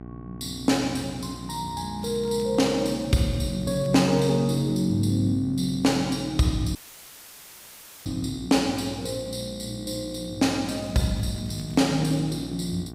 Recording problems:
hum; 60 Hz, harmonics up to 1.5 kHz, SNR 14 dB
crackle; from 2 to 4.5 s and from 11 to 12 s; loose cable, SNR 28 dB
dropout; at 7 s for 1.5 s; filled with static

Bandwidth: 15.5 kHz